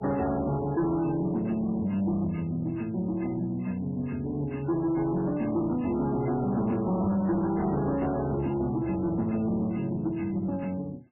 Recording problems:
lossy compression; MP3, log-spectral distance 2 dB, nothing above 2.7 kHz
distortion; soft clipping, signal-to-distortion ratio 11 dB

